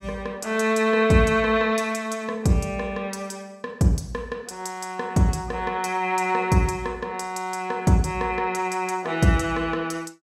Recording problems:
none

